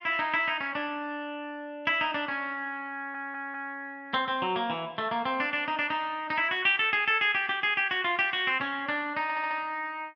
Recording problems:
stutter; at 3 s and at 9 s

